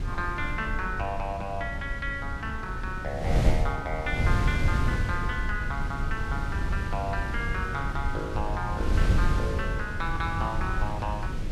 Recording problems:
wind on the microphone; below 120 Hz, SNR -2 dB

